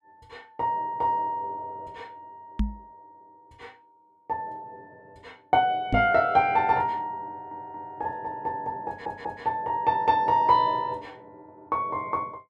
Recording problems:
knock on the microphone; at 2.5 s and at 6 s; peak +3 dB vs average level
stutter; at 7.5 s and at 9 s

